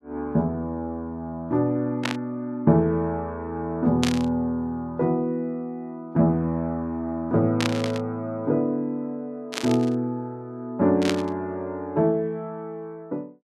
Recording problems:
burst of static; 5 times, first at 2 s; peak +3 dB vs average level

